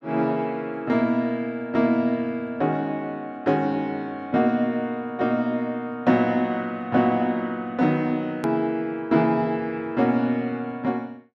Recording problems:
hard cut with a click; at 8.5 s

